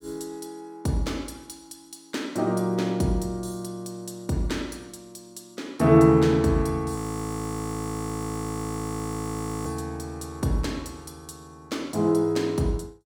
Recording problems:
audio freezing; at 7 s for 2.5 s

